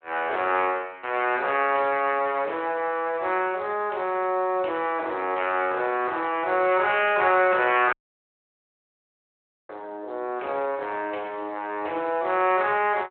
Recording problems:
phone line; 280 Hz to 3 kHz, Speex
dropout; at 8 s for 2 s

